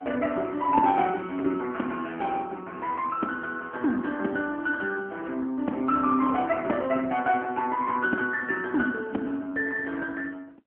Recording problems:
phone line; 220 Hz to 3 kHz, AMR-NB

